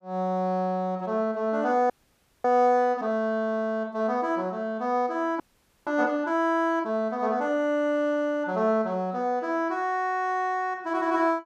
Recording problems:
frozen audio; at 2 s for 0.5 s and at 5.5 s

